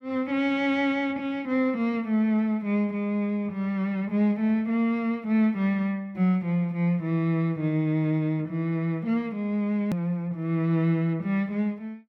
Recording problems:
hard cut with a click; at 10 s

